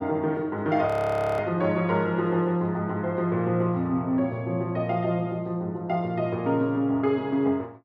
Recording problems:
frozen audio; at 1 s for 0.5 s

